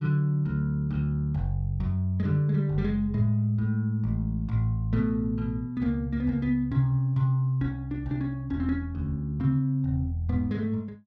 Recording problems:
none

